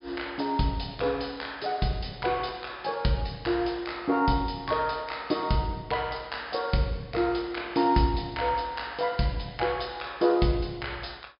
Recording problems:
low-pass filter; nothing above 5.5 kHz

